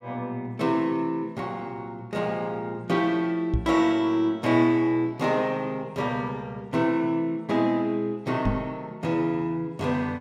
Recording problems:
microphone bump; at 3.5 s and at 8.5 s; peak +4 dB vs average level

